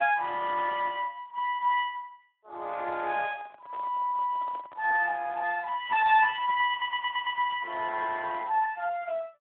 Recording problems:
telephone audio; 370 Hz to 3.5 kHz, Speex
microphone handling noise; from 3 to 5 s; peak -13 dB vs average level
stutter; at 6.5 s

